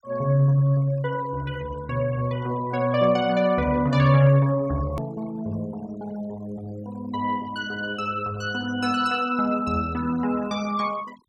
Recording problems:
noise reduction artefacts; signal-to-artefact ratio 22 dB
hard cut with a click; at 5 s

